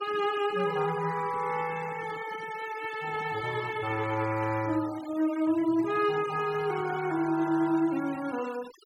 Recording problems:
noise reduction artefacts; signal-to-artefact ratio 16 dB

